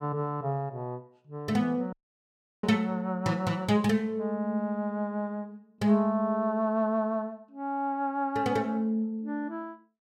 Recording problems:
dropout; at 2 s for 0.5 s

